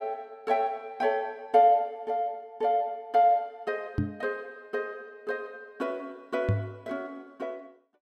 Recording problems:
knock on the microphone; at 4 s and at 6.5 s; peak +6 dB vs average level

